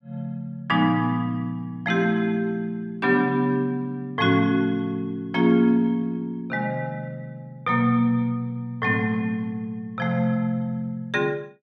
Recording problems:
none

